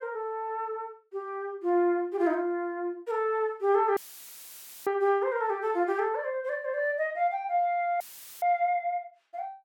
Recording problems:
dropout; at 4 s for 1 s and at 8 s; filled with static

